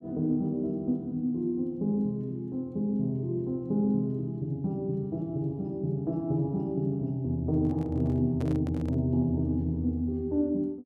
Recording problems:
handling noise; from 7.5 to 9 s; peak -8 dB vs average level

